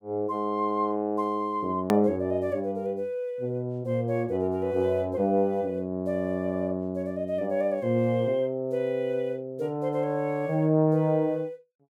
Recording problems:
edit click; at 2 s

